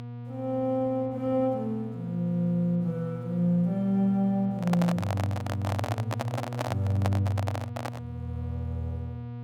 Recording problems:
hum; 60 Hz, harmonics up to 1.2 kHz, SNR 9 dB
handling noise; from 4.5 to 8 s; peak +2 dB vs average level

